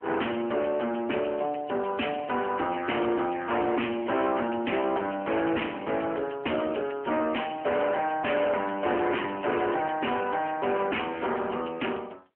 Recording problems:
telephone audio; 240 Hz to 3.1 kHz, AMR-NB
distorted audio; hard clipping, signal-to-distortion ratio 7 dB

